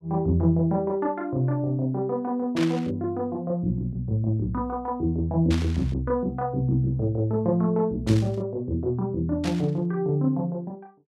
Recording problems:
burst of static; 4 times, first at 2.5 s; peak -4 dB vs average level

